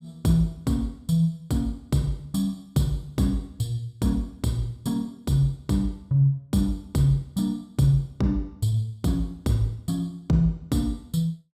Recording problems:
none

